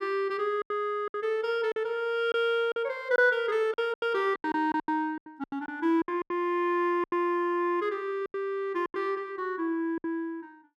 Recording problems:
lost packets; 11% of the sound replaced, filled with silence

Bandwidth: 15 kHz